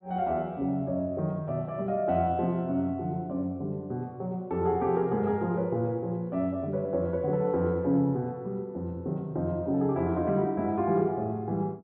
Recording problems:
treble cut off; nothing above 4 kHz

